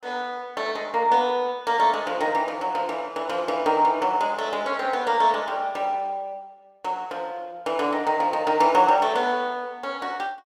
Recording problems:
none

